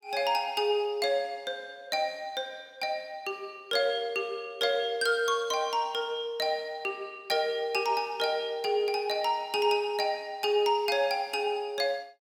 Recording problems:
none

